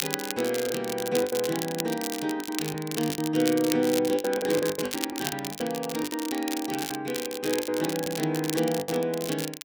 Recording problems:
crackling; vinyl, SNR 6 dB
lost packets; 11% of the sound replaced, filled with the last packet

